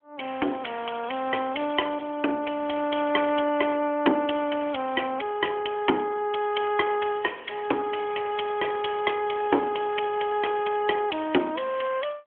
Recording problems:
telephone audio; 240 Hz to 3.3 kHz, AMR-NB

